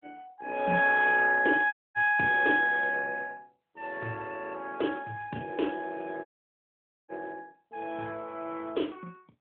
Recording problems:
phone line; 220 Hz to 3.4 kHz, AMR-NB
dropout; at 1.5 s and at 6.5 s for 1 s

